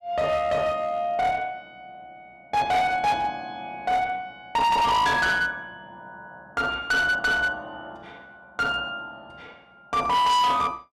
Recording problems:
distorted audio; hard clipping, uneven, signal-to-distortion ratio 7 dB

